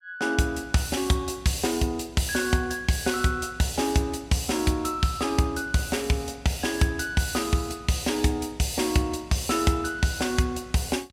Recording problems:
none

